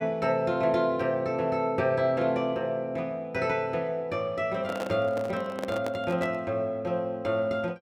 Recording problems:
handling noise; from 4.5 to 6.5 s; peak -2 dB vs average level

